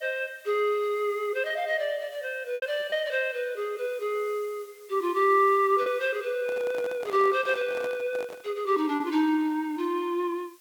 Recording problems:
hiss; slope +2 dB per octave, SNR 27 dB
lost packets; 2% of the sound replaced, filled with repeated pitch periods
microphone handling noise; from 6.5 to 8.5 s; peak -8 dB vs average level

